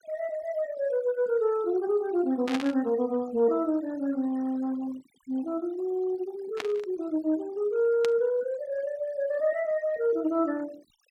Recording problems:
denoising artefacts; signal-to-artefact ratio 23 dB
burst of static; at 2.5 s, at 6.5 s and at 8 s; peak -1 dB vs average level

